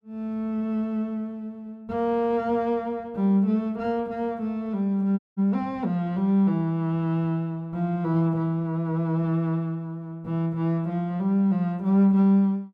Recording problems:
audio cutting out; at 5 s

